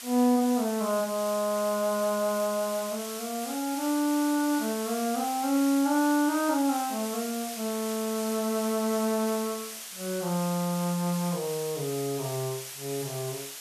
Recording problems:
hiss; slope +3 dB per octave, SNR 9 dB

